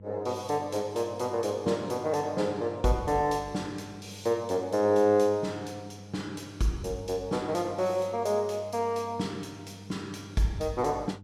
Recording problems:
hum; 50 Hz, harmonics up to 500 Hz, SNR 18 dB

